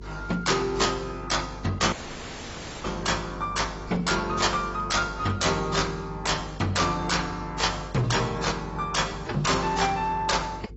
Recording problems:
lossy codec; AAC, then AAC, log-spectral distance 7 dB, nothing above 7.8 kHz
distortion; hard clipping, signal-to-distortion ratio 6 dB
mains hum; 50 Hz, harmonics up to 450 Hz, SNR 16 dB
audio cutting out; at 2 s for 1 s

